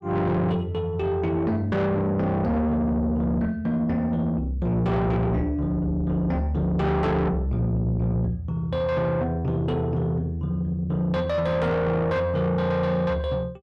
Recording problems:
distorted audio; soft clipping, signal-to-distortion ratio 8 dB

